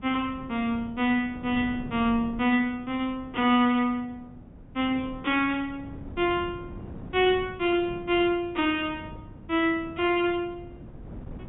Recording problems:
treble missing; nothing above 4 kHz
wind on the microphone; below 280 Hz, SNR 17 dB

